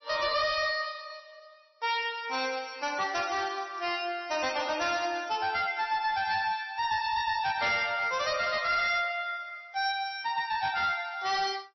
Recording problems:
lossy codec; MP3, log-spectral distance 7 dB, nothing above 5.8 kHz
distorted audio; hard clipping, uneven, signal-to-distortion ratio 10 dB

